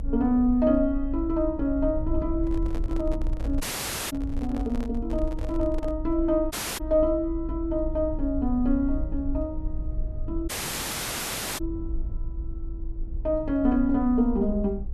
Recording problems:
rumble; below 54 Hz, strongest tone 26 Hz, SNR 8 dB
handling noise; from 2.5 to 6 s; peak -9 dB vs average level
audio cutting out; at 3.5 s for 0.5 s, at 6.5 s and at 10 s for 1 s

